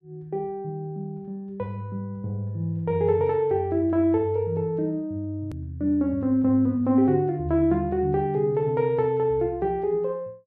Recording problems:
edit click; at 5.5 s

